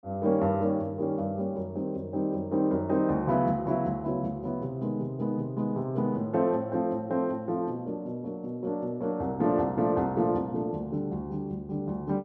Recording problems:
none

